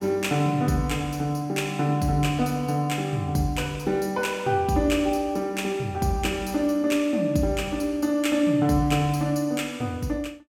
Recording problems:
none

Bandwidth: 17 kHz